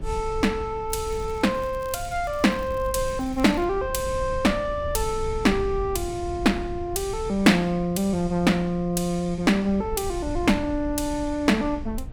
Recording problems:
rumble; below 88 Hz, SNR 13 dB
crackling; from 1 to 3.5 s; loose cable, SNR 27 dB

